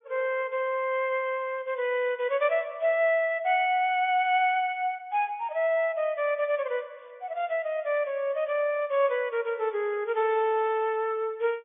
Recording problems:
low-pass filter; nothing above 3.5 kHz

